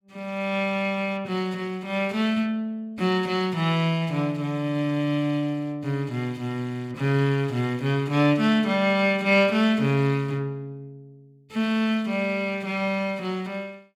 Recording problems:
none

